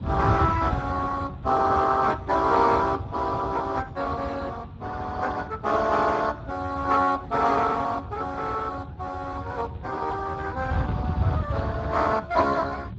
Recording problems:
lossy codec; Speex, log-spectral distance 4 dB
wind on the microphone; below 150 Hz, SNR 9 dB

